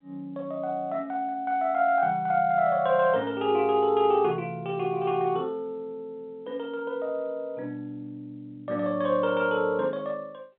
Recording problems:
phone line; 300 Hz to 3.6 kHz, G.711

